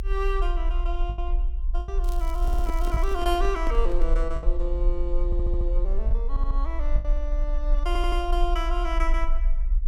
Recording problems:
low-frequency rumble; below 46 Hz, strongest tone 32 Hz, SNR -4 dB
packet loss; 4% of the sound replaced, filled with the last packet
crackle; from 2 to 3 s; loose cable, SNR 17 dB
handling noise; from 2.5 to 4 s; peak 0 dB vs average level
stutter; 4 times, first at 2.5 s

